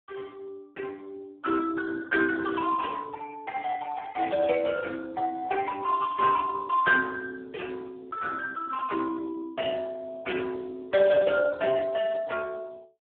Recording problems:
telephone audio; 280 Hz to 2.2 kHz, Speex

